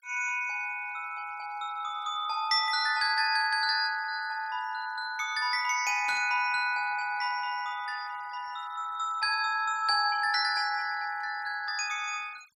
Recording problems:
noise reduction artefacts; signal-to-artefact ratio 24 dB
burst of static; at 6 s; peak -11 dB vs average level

